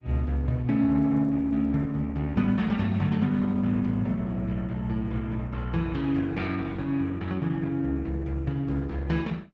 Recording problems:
codec artefacts; Opus, log-spectral distance 2 dB

